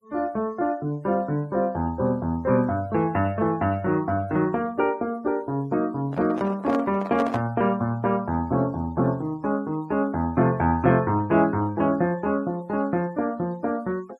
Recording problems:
noise reduction artefacts; signal-to-artefact ratio 27 dB
microphone handling noise; from 6 to 7.5 s; peak -2 dB vs average level

